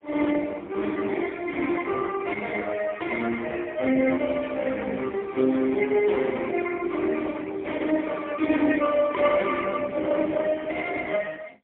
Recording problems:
phone line; 220 Hz to 3.4 kHz, AMR-NB, then MP3

